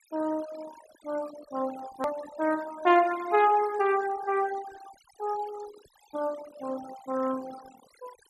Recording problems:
noise reduction artefacts; signal-to-artefact ratio 18 dB
click at an edit; at 2 s

